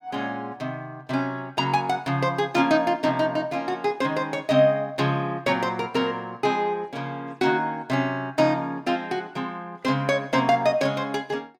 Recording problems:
none

